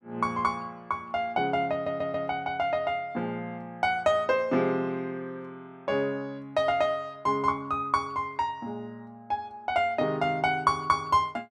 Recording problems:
audio stuttering; at 1.5 s

